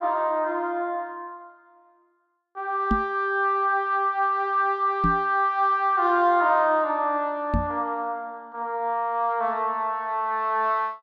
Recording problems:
microphone thump; at 3 s, at 5 s and at 7.5 s; peak +3 dB vs average level

